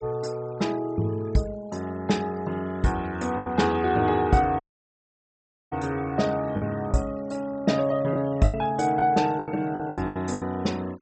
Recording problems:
treble missing; nothing above 8 kHz
denoising artefacts; signal-to-artefact ratio 22 dB
lost packets; 6% of the sound replaced, filled with the last packet
audio cutting out; at 4.5 s for 1 s

